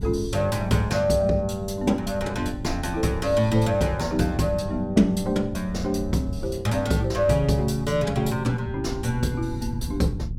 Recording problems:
wind on the microphone; below 120 Hz, SNR 13 dB

